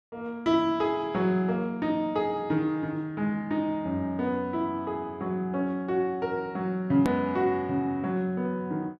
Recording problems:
click at an edit; at 7 s

